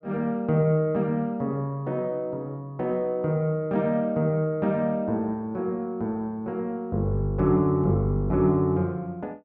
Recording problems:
none

